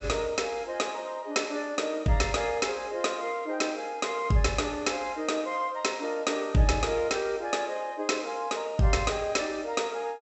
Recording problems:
treble cut off; nothing above 7.9 kHz

